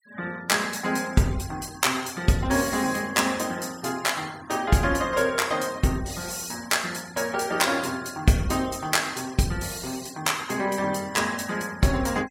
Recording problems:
noise reduction artefacts; signal-to-artefact ratio 20 dB

